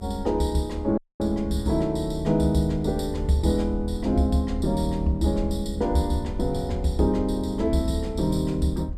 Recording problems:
low-frequency rumble; below 78 Hz, SNR 9 dB
audio cutting out; at 1 s

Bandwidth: 14.5 kHz